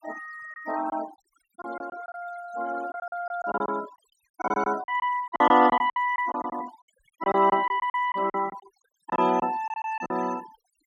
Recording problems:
noise reduction artefacts; signal-to-artefact ratio 18 dB
lost packets; 13% of the sound replaced, filled with silence

